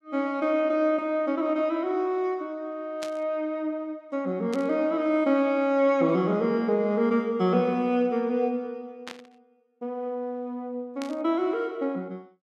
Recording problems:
burst of static; 4 times, first at 3 s; peak -7 dB vs average level

